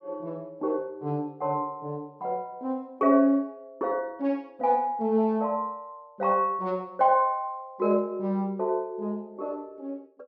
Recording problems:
none

